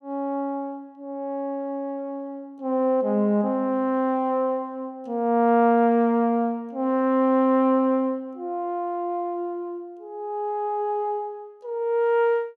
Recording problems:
none

